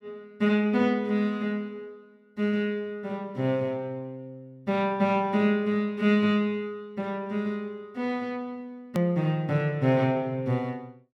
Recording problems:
click at an edit; at 9 s

